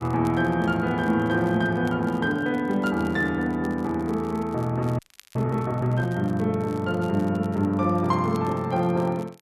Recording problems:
crackle; vinyl, SNR 28 dB
audio freezing; at 5 s

